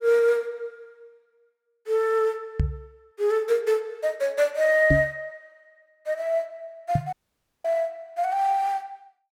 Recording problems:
knock on the microphone; at 2.5 s, at 5 s and at 7 s; peak +5 dB vs average level
audio cutting out; at 7 s for 0.5 s

